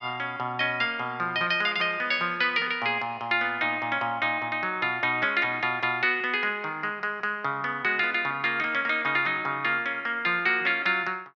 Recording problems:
none

